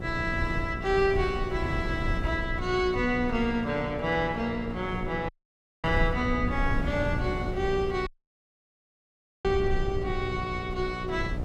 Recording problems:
electrical hum; 60 Hz, harmonics up to 1.4 kHz, SNR 10 dB
low-frequency rumble; below 96 Hz, SNR 10 dB
wind on the microphone; below 140 Hz, SNR 8 dB
dropout; at 5.5 s for 0.5 s and at 8 s for 1.5 s

